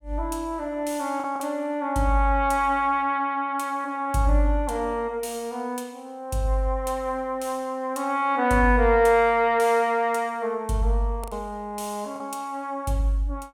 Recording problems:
lost packets; 1.5% of the sound replaced, filled with the last packet

